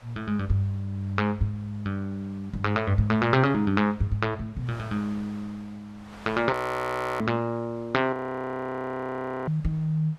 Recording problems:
wind noise; below 1.9 kHz, SNR 24 dB
frozen audio; at 6.5 s for 0.5 s and at 8 s for 1.5 s

